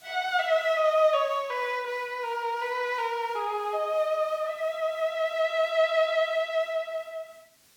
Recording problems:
background hiss; slope 0 dB per octave, SNR 29 dB

